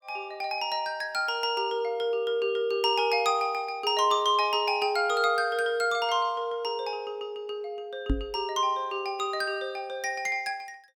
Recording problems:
microphone thump; at 8 s; peak +4 dB vs average level

